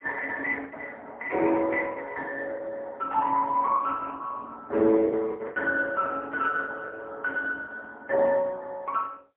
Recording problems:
phone line; 300 Hz to 3 kHz, AMR-NB, then MP3
lost packets; 6% of the sound replaced, filled with the last packet

